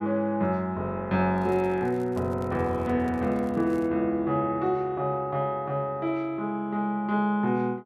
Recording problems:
crackling; from 1.5 to 4 s; loose cable, SNR 30 dB

